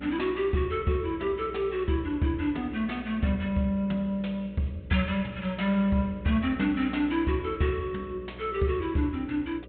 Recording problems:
treble missing; nothing above 4 kHz
hum; 60 Hz, harmonics up to 600 Hz, SNR 17 dB

